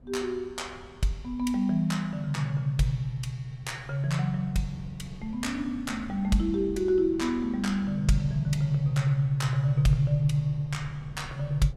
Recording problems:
wind noise; below 160 Hz, SNR 20 dB

